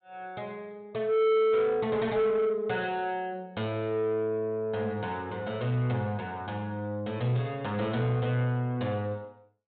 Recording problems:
treble cut off; nothing above 4 kHz
distortion; soft clipping, signal-to-distortion ratio 8 dB

